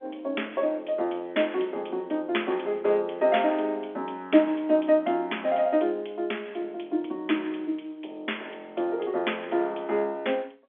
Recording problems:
phone line; 240 Hz to 3.5 kHz, G.711

